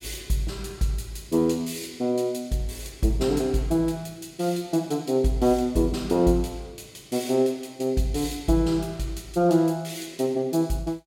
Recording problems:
none

